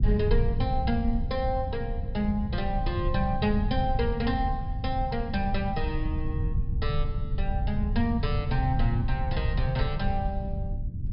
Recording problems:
treble cut off; nothing above 5.5 kHz
rumble; below 100 Hz, SNR 0 dB

